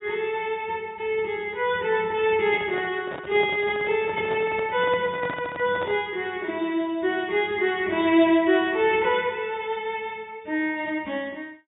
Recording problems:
treble cut off; nothing above 4 kHz
microphone handling noise; from 2.5 to 6 s; peak -6 dB vs average level

